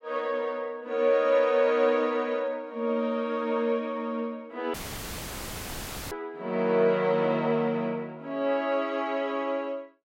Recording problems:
audio cutting out; at 4.5 s for 1.5 s; filled with static

